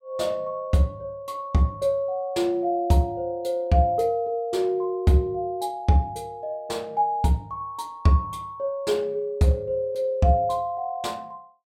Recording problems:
none

